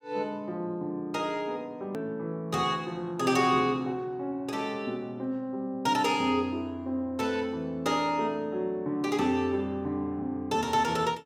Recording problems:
edit click; at 2 s

